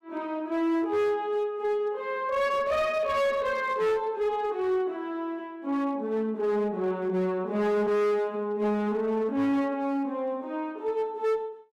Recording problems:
distorted audio; hard clipping, signal-to-distortion ratio 10 dB

